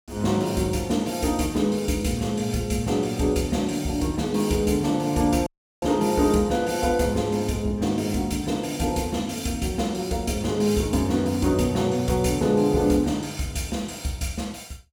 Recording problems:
audio cutting out; at 5.5 s

